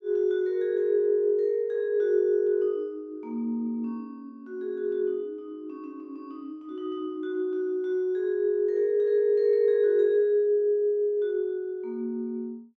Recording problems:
none

